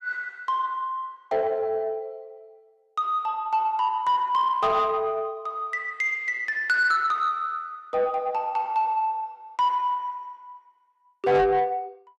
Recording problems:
distortion; soft clipping, signal-to-distortion ratio 12 dB

